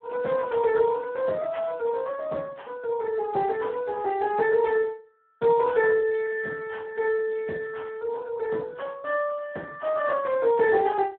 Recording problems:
telephone audio; 220 Hz to 2.8 kHz, Speex

